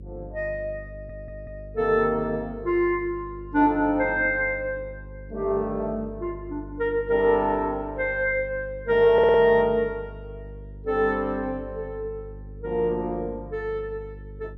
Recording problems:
hum; 50 Hz, harmonics up to 550 Hz, SNR 17 dB
stutter; at 1 s and at 9 s

